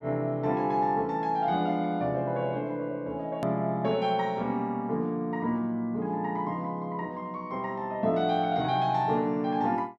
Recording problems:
edit click; at 3.5 s

